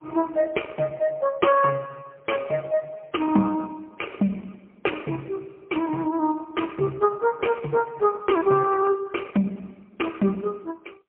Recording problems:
telephone audio; 170 Hz to 3.2 kHz, AMR-NB, then MP3

